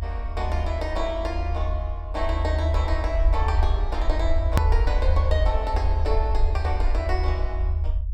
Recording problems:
low-frequency rumble; below 76 Hz, SNR -4 dB
click at an edit; at 4.5 s

